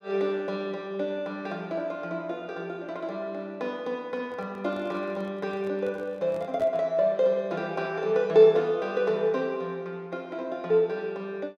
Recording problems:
microphone handling noise; from 4 to 7 s; peak -11 dB vs average level

